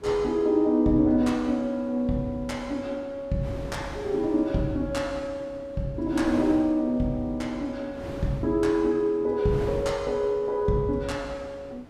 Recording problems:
wind noise; below 630 Hz, SNR 17 dB

